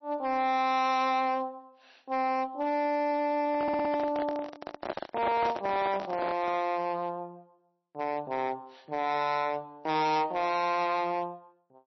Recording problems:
lossy codec; MP3, log-spectral distance 2 dB, nothing above 5.8 kHz
distorted audio; hard clipping, signal-to-distortion ratio 7 dB
handling noise; from 3.5 to 6.5 s; peak 0 dB vs average level
stutter; at 3.5 s

